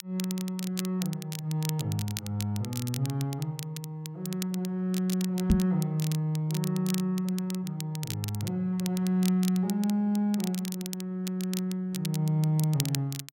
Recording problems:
crackling; vinyl, SNR 11 dB
microphone thump; at 5.5 s; peak +9 dB vs average level

